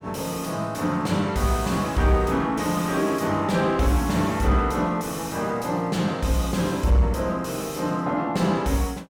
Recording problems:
distorted audio; soft clipping, signal-to-distortion ratio 12 dB

